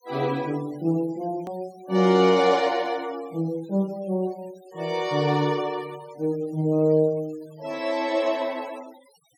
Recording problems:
noise reduction artefacts; signal-to-artefact ratio 24 dB
edit click; at 1.5 s

